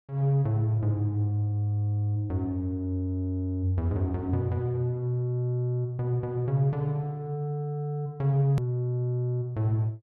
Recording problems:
click at an edit; at 8.5 s

